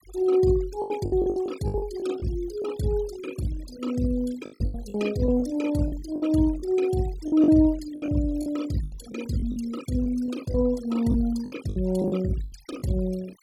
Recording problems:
noise reduction artefacts; signal-to-artefact ratio 18 dB
lost packets; 12% of the sound replaced, filled with the last packet

